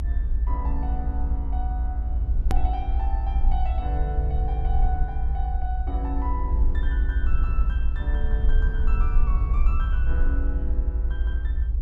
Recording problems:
low-frequency rumble; below 58 Hz, SNR -11 dB
click at an edit; at 2.5 s

